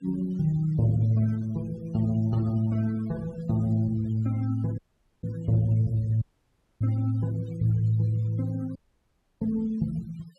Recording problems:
noise reduction artefacts; signal-to-artefact ratio 25 dB
audio cutting out; at 5 s, at 6 s for 0.5 s and at 9 s for 0.5 s

